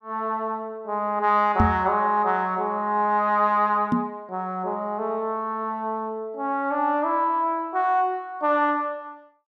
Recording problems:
microphone thump; at 1.5 s and at 4 s; peak +6 dB vs average level

